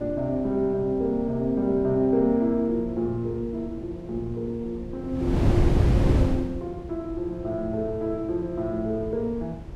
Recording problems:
wind on the microphone; below 220 Hz, SNR 1 dB

